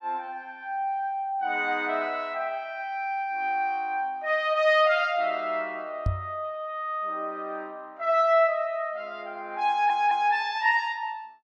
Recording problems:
knock on the microphone; at 6 s; peak +3 dB vs average level
stutter; at 9.5 s

